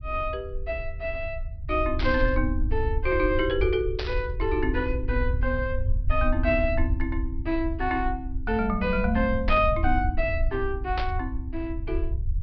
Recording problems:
low-pass filter; nothing above 5.5 kHz
low-frequency rumble; below 70 Hz, SNR 3 dB
static burst; 4 times, first at 2 s; peak -1 dB vs average level

